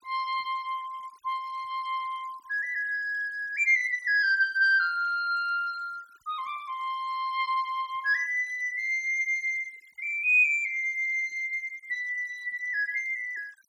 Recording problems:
noise reduction artefacts; signal-to-artefact ratio 27 dB

